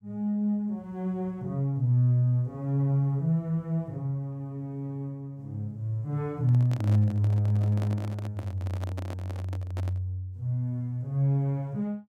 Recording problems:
handling noise; from 6.5 to 10 s; peak -7 dB vs average level

